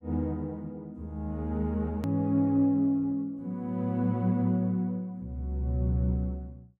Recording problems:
click at an edit; at 2 s

